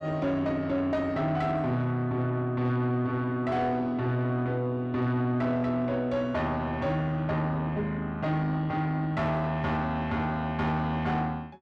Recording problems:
distortion; soft clipping, signal-to-distortion ratio 10 dB

